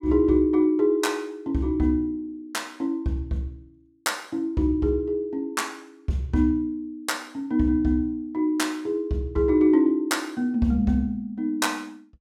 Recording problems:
none

